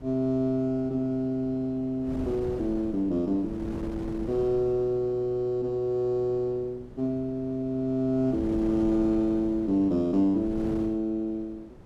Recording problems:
wind noise; below 360 Hz, SNR 14 dB

